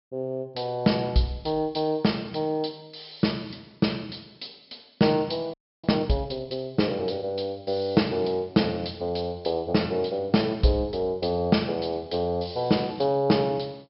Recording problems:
low-pass filter; nothing above 5.4 kHz
audio freezing; at 5.5 s

